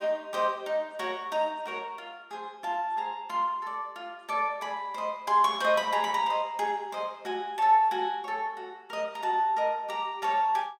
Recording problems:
none

